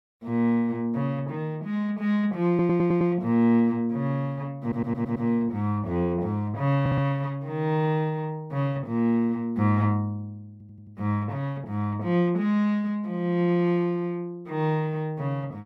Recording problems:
audio stuttering; 4 times, first at 2.5 s

